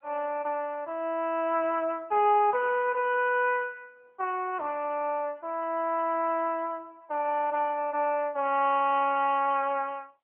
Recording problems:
phone line; 300 Hz to 3.3 kHz, AMR-NB

